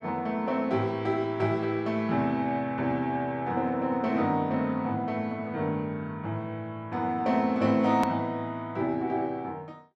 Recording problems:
edit click; at 8 s

